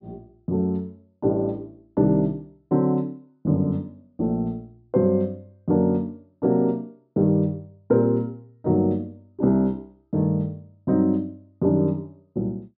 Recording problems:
treble missing; nothing above 5.3 kHz

